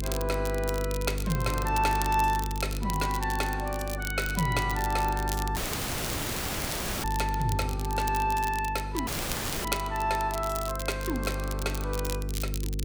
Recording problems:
hum; 50 Hz, harmonics up to 500 Hz, SNR 4 dB
crackle; vinyl, SNR 9 dB
audio cutting out; at 5.5 s for 1.5 s and at 9 s for 0.5 s

